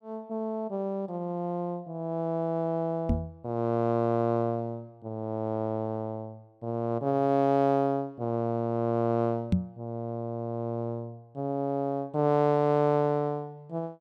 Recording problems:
microphone bump; at 3 s and at 9.5 s; peak +8 dB vs average level

